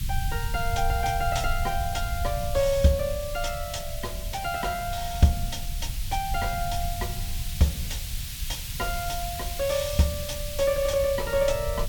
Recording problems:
background hiss; SNR 9 dB
rumble; below 86 Hz, SNR 7 dB

